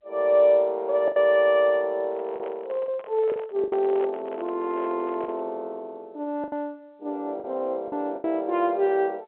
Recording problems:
phone line; 260 Hz to 3.5 kHz, G.711
lost packets; 6% of the sound replaced, filled with the last packet
handling noise; from 2 to 5.5 s; peak -8 dB vs average level

